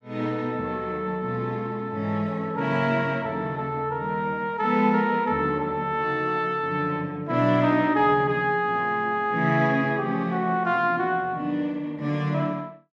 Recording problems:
none

